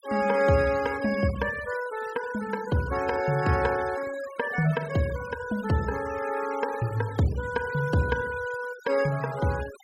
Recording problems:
noise reduction artefacts; signal-to-artefact ratio 15 dB

